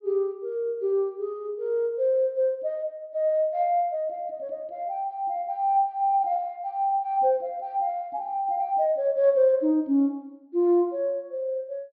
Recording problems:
low-pass filter; nothing above 5.5 kHz

